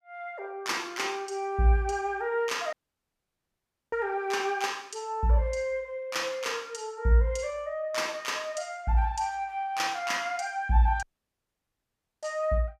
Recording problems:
audio cutting out; at 2.5 s for 1 s and at 11 s for 1 s

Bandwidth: 15 kHz